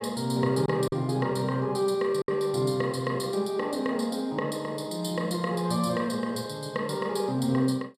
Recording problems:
lost packets; 1.5% of the sound replaced, filled with silence

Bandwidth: 14.5 kHz